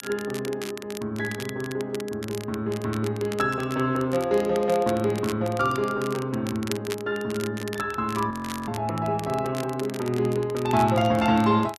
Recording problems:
crackling; vinyl, SNR 15 dB
frozen audio; at 8.5 s

